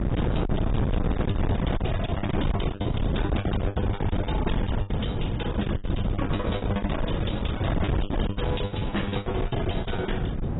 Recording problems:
lossy compression; AAC, log-spectral distance 4 dB, nothing above 3.8 kHz
distortion; hard clipping, uneven, signal-to-distortion ratio 7 dB
wind on the microphone; below 280 Hz, SNR -4 dB
lost packets; 19% of the sound replaced, filled with the last packet

